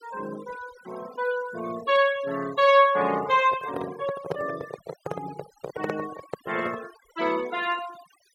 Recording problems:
denoising artefacts; signal-to-artefact ratio 18 dB
handling noise; from 3.5 to 7 s; peak 0 dB vs average level

